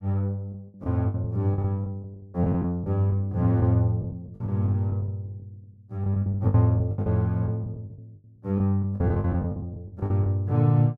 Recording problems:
lost packets; 16% of the sound replaced, filled with the last packet

